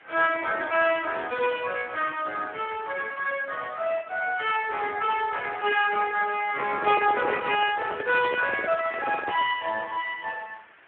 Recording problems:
telephone audio; 300 Hz to 2.9 kHz, Speex
hiss; SNR 25 dB
handling noise; from 6.5 to 9.5 s; peak -1 dB vs average level

